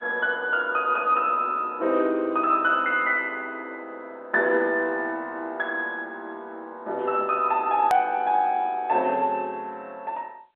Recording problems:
telephone audio; 320 Hz to 3.6 kHz, G.711
hard cut with a click; at 8 s

